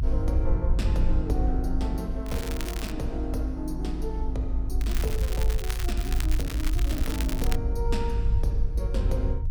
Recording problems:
rumble; below 54 Hz, SNR -4 dB
crackling; at 2.5 s and from 5 to 7.5 s; loose cable, SNR 5 dB

